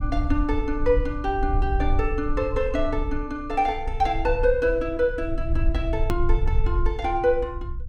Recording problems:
rumble; below 62 Hz, SNR 4 dB
hard cut with a click; at 6 s

